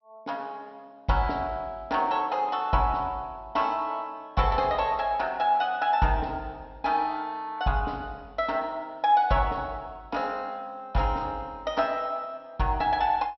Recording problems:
treble missing; nothing above 5.7 kHz

